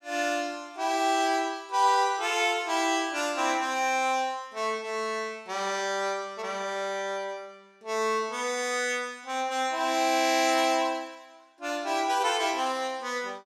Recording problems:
none

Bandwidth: 15 kHz